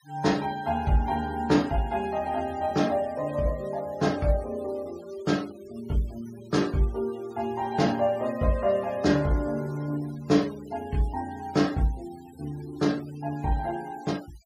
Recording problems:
denoising artefacts; signal-to-artefact ratio 22 dB

